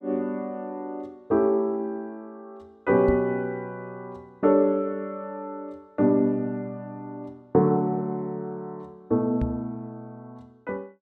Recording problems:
microphone thump; at 3 s and at 9.5 s; peak +1 dB vs average level

